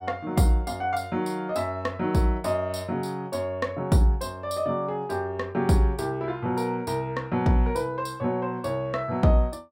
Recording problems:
none

